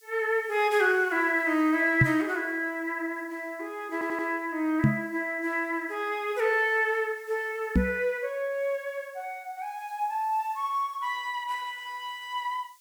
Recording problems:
hiss; SNR 28 dB
microphone bump; at 2 s, at 5 s and at 8 s; peak +9 dB vs average level
stutter; at 4 s

